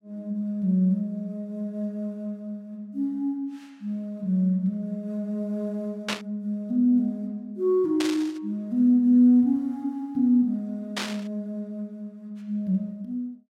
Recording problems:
burst of static; at 6 s, at 8 s and at 11 s; peak +2 dB vs average level

